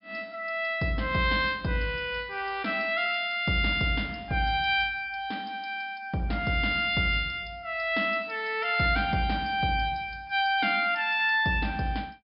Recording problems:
low-pass filter; nothing above 5.5 kHz

